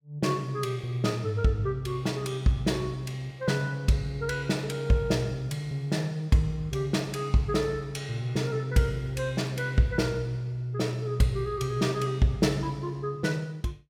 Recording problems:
none

